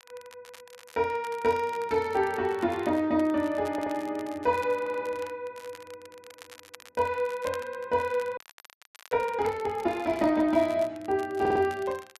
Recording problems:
crackle; vinyl, SNR 22 dB
audio stuttering; at 3.5 s, at 5 s and at 11 s
audio freezing; at 8.5 s for 0.5 s

